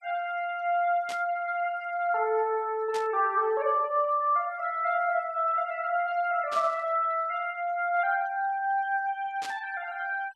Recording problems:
noise reduction artefacts; signal-to-artefact ratio 28 dB
static burst; 4 times, first at 1 s; peak -7 dB vs average level

